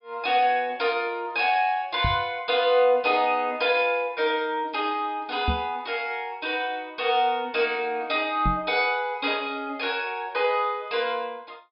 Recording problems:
treble missing; nothing above 5.5 kHz
knock on the microphone; at 2 s, at 5.5 s and at 8.5 s; peak +2 dB vs average level

